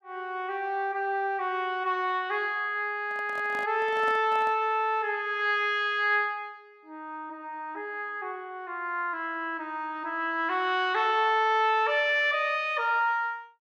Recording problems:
handling noise; from 3 to 4.5 s; peak -10 dB vs average level

